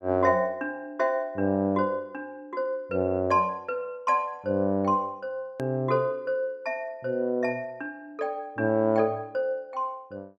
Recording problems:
edit click; at 5.5 s

